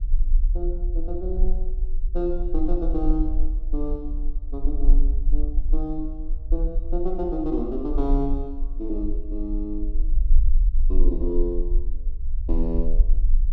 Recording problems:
low-frequency rumble; below 38 Hz, strongest tone 22 Hz, SNR -3 dB

